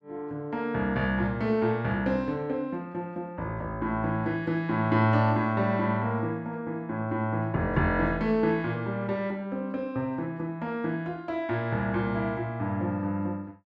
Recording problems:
none

